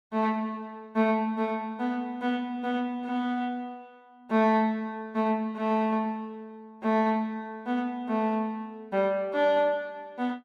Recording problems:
none

